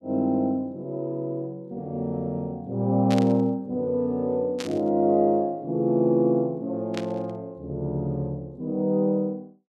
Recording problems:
burst of static; at 3 s, at 4.5 s and at 7 s; peak -5 dB vs average level

